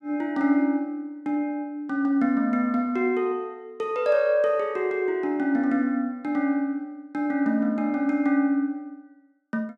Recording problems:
none

